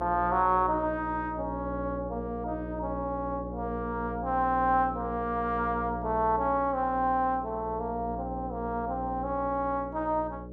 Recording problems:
hum; 60 Hz, harmonics up to 600 Hz, SNR 10 dB

